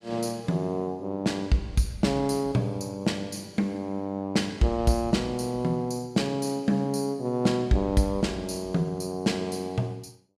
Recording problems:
none

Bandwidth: 14.5 kHz